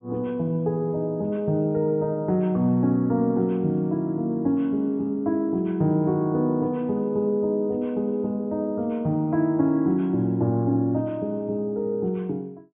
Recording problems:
treble missing; nothing above 3.4 kHz

